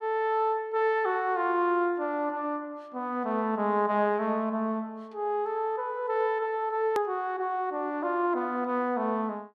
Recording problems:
edit click; at 7 s

